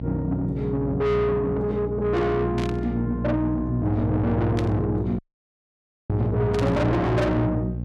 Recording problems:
distorted audio; soft clipping, signal-to-distortion ratio 6 dB
hum; 60 Hz, harmonics up to 540 Hz, SNR 6 dB
static burst; at 2.5 s, at 4.5 s and at 6.5 s; peak -6 dB vs average level
dropout; at 5 s for 1 s

